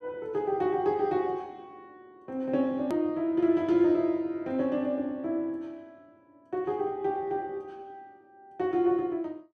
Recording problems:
edit click; at 3 s

